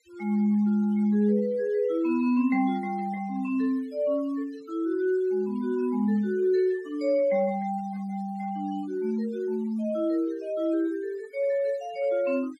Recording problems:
noise reduction artefacts; signal-to-artefact ratio 26 dB

